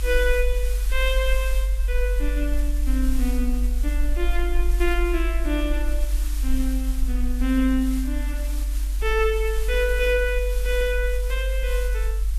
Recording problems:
hiss; slope +2 dB per octave, SNR 14 dB
low-frequency rumble; below 50 Hz, strongest tone 48 Hz, SNR -1 dB

